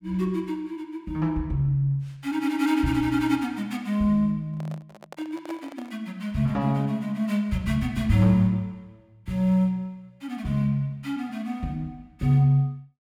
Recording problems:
microphone handling noise; from 4.5 to 6 s; peak -10 dB vs average level

